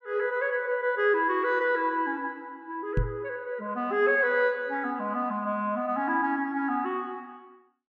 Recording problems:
microphone thump; at 3 s; peak +4 dB vs average level

